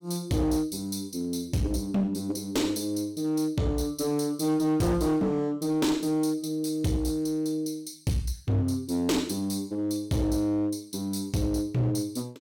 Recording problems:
distorted audio; hard clipping, uneven, signal-to-distortion ratio 10 dB

